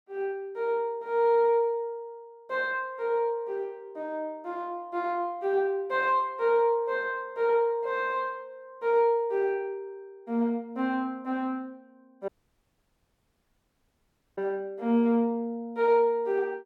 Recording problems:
dropout; at 12 s for 2 s

